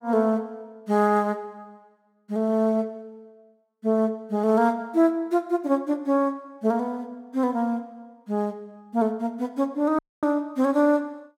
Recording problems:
dropout; at 10 s

